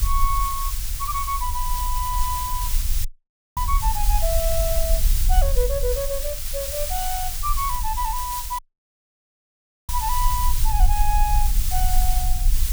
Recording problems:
background hiss; slope +3 dB per octave, SNR 1 dB
rumble; below 46 Hz, SNR -1 dB
dropout; at 3 s for 0.5 s and at 8.5 s for 1.5 s

